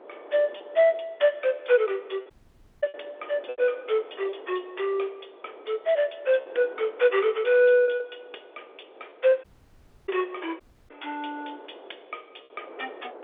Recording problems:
phone line; 340 Hz to 3.6 kHz, G.711
wind noise; below 740 Hz, SNR 22 dB
packet loss; 4% of the sound replaced, filled with repeated pitch periods
dropout; at 2.5 s for 0.5 s, at 9.5 s for 0.5 s and at 11 s

